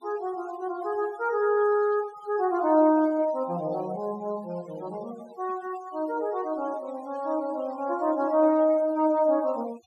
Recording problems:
noise reduction artefacts; signal-to-artefact ratio 23 dB

